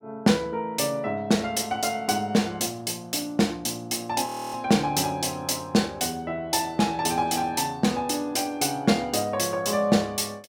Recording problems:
frozen audio; at 4.5 s

